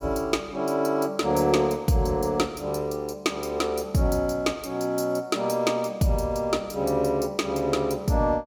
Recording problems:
none

